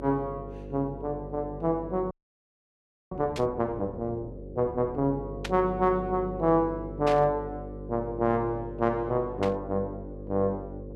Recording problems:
electrical hum; 50 Hz, harmonics up to 550 Hz, SNR 11 dB
frozen audio; at 2 s for 1 s
burst of static; 4 times, first at 3.5 s; peak -2 dB vs average level

